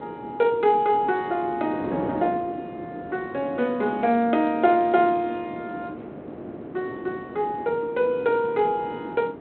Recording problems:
telephone audio; 190 Hz to 3.6 kHz, G.726
wind on the microphone; below 480 Hz, SNR 13 dB

